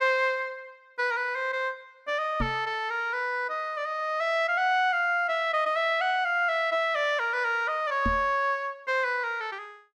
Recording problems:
microphone bump; at 2.5 s and at 8 s; peak 0 dB vs average level

